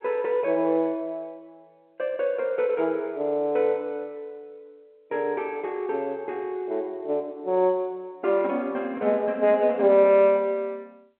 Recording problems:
telephone audio; 260 Hz to 3.5 kHz, G.711

